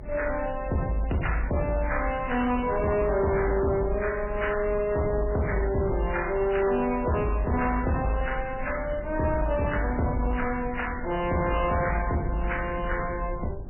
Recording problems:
lossy compression; MP3, log-spectral distance 4 dB, nothing above 2.9 kHz
distortion; hard clipping, signal-to-distortion ratio 11 dB
rumble; below 78 Hz, SNR 11 dB

